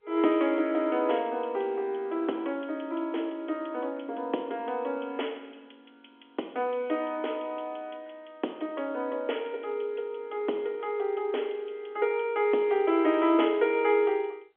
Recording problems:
telephone audio; 260 Hz to 3.4 kHz, G.711

